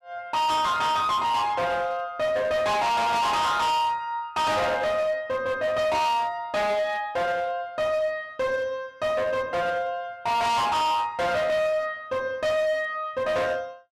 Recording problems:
distortion; hard clipping, signal-to-distortion ratio 7 dB

